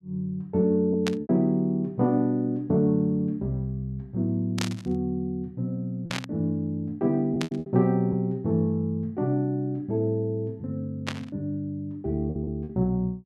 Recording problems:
packet loss; 3% of the sound replaced, filled with repeated pitch periods
static burst; 5 times, first at 1 s; peak +1 dB vs average level

